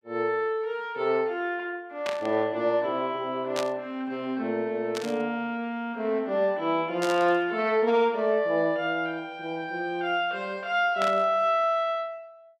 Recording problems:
static burst; 5 times, first at 2 s; peak -2 dB vs average level

